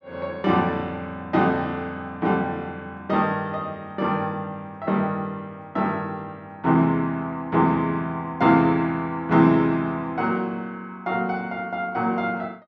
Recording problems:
none

